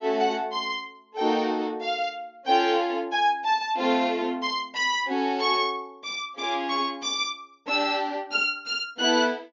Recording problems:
treble missing; nothing above 7 kHz

